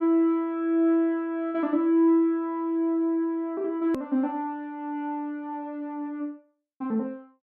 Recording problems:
click at an edit; at 4 s

